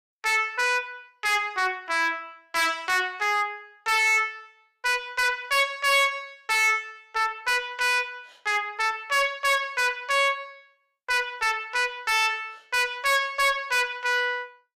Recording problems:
distortion; hard clipping, signal-to-distortion ratio 8 dB

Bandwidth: 15.5 kHz